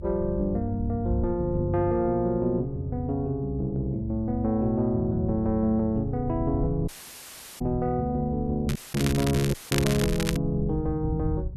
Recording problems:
rumble; below 98 Hz, SNR 11 dB
dropout; at 7 s for 0.5 s, at 9 s and at 9.5 s
crackling; from 8.5 to 10 s; loose cable, SNR 7 dB

